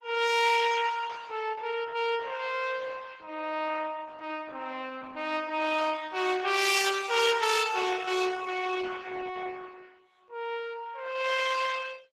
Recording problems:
lossy compression; Opus, log-spectral distance 5 dB, nothing above 15.1 kHz

